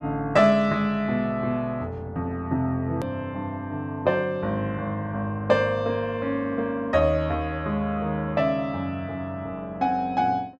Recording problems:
click at an edit; at 3 s

